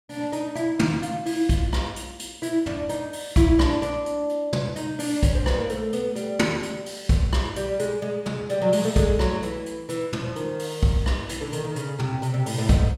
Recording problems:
none

